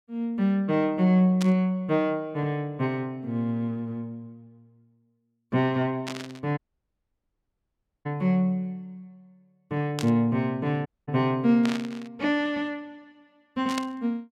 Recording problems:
static burst; 5 times, first at 1.5 s; peak -3 dB vs average level
dropout; at 6.5 s for 1.5 s and at 11 s

